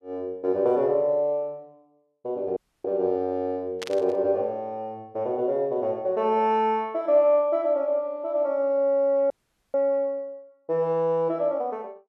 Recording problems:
dropout; at 2.5 s and at 9.5 s
burst of static; at 4 s; peak -5 dB vs average level

